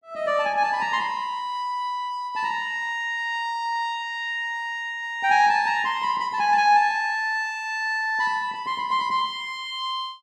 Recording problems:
none

